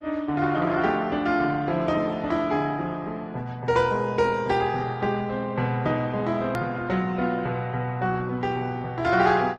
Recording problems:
codec artefacts; MP3, then Opus, log-spectral distance 3 dB, nothing above 13.7 kHz
hard cut with a click; at 6.5 s

